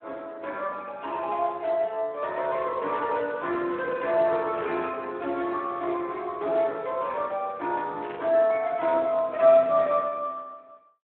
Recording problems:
telephone audio; 220 Hz to 3.1 kHz, Speex
burst of static; at 4.5 s and at 8 s; peak -11 dB vs average level

